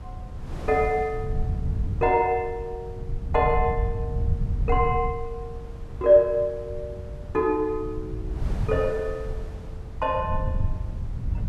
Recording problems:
rumble; below 100 Hz, SNR 7 dB
wind noise; below 750 Hz, SNR 20 dB

